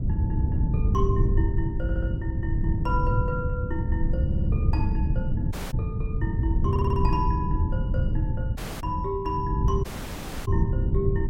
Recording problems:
wind on the microphone; below 130 Hz, SNR -6 dB
stutter; at 2 s, at 4.5 s and at 6.5 s
dropout; at 5.5 s, at 8.5 s and at 10 s for 0.5 s

